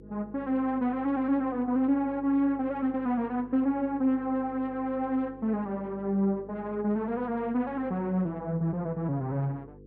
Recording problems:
hum; 50 Hz, harmonics up to 500 Hz, SNR 21 dB

